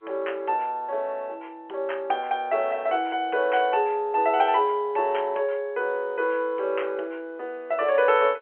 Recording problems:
telephone audio; 340 Hz to 3.2 kHz, G.711

